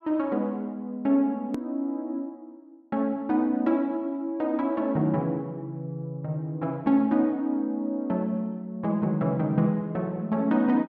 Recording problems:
edit click; at 1.5 s

